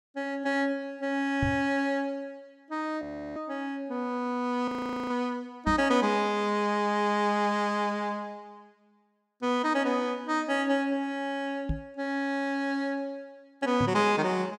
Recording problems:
knock on the microphone; 4 times, first at 1.5 s; peak +2 dB vs average level
audio freezing; at 3 s and at 4.5 s

